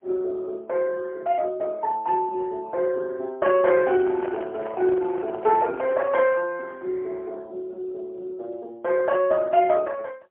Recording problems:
phone line; 320 Hz to 3.2 kHz, AMR-NB, then MP3
microphone handling noise; from 3.5 to 6.5 s; peak -7 dB vs average level

